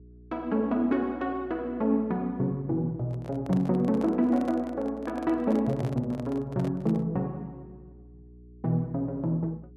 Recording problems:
hum; 60 Hz, harmonics up to 420 Hz, SNR 23 dB
handling noise; from 3 to 7 s; peak -6 dB vs average level

